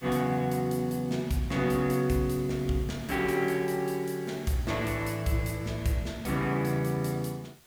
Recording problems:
background hiss; slope -1 dB per octave, SNR 23 dB

